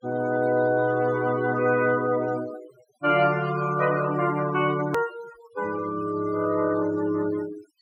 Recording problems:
noise reduction artefacts; signal-to-artefact ratio 16 dB
hard cut with a click; at 5 s

